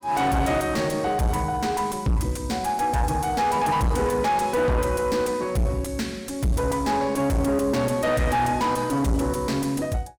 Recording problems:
distorted audio; soft clipping, signal-to-distortion ratio 6 dB

